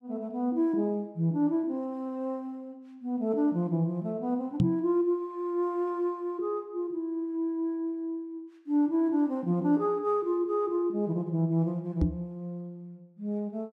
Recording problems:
microphone thump; at 4.5 s and at 12 s; peak +8 dB vs average level

